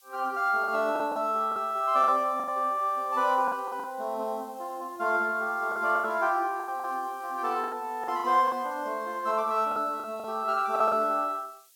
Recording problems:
hiss; SNR 27 dB
packet loss; 9% of the sound replaced, filled with the last packet

